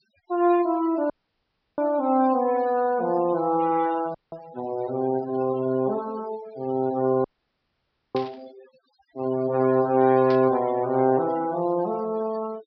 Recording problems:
treble missing; nothing above 5.5 kHz
noise reduction artefacts; signal-to-artefact ratio 19 dB
audio cutting out; at 1 s for 0.5 s, at 4 s and at 7 s for 1 s
static burst; at 8 s and at 10 s; peak -10 dB vs average level

